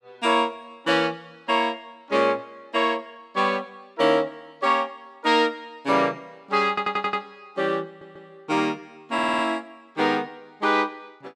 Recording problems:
stutter; at 6.5 s, at 8 s and at 9 s

